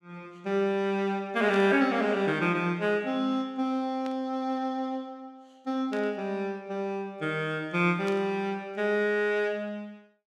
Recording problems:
static burst; 4 times, first at 1.5 s; peak -11 dB vs average level

